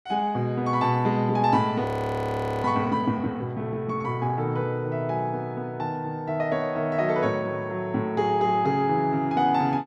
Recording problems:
frozen audio; at 2 s for 1 s

